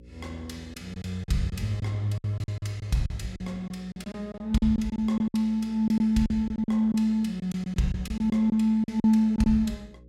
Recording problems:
hum; 60 Hz, harmonics up to 540 Hz, SNR 25 dB
packet loss; 12% of the sound replaced, filled with silence

